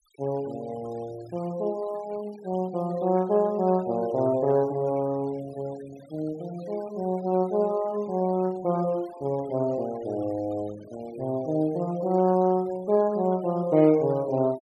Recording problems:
noise reduction artefacts; signal-to-artefact ratio 23 dB

